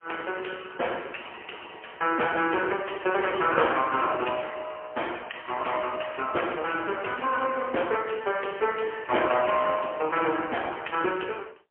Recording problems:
telephone audio; 280 Hz to 3.2 kHz, AMR-NB, then MP3

